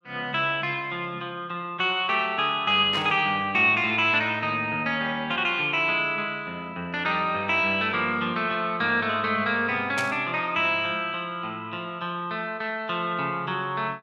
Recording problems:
static burst; at 3 s and at 10 s; peak -3 dB vs average level

